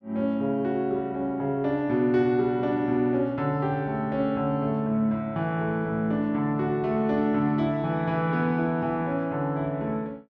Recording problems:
none

